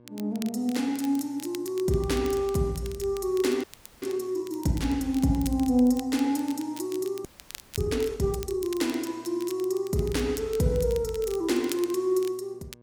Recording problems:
hum; 60 Hz, harmonics up to 1.2 kHz, SNR 27 dB
crackling; vinyl, SNR 18 dB
frozen audio; at 3.5 s and at 7.5 s for 0.5 s

